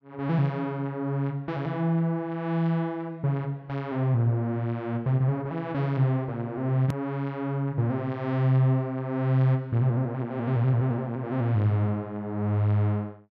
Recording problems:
click at an edit; at 7 s

